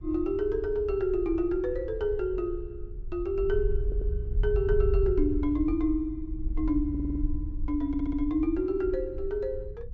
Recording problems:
treble cut off; nothing above 8 kHz
wind on the microphone; below 60 Hz, SNR 6 dB
audio stuttering; at 4 s, at 7 s and at 8 s

